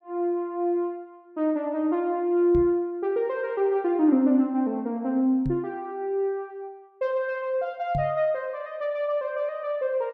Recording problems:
microphone bump; at 2.5 s, at 5.5 s and at 8 s; peak -1 dB vs average level

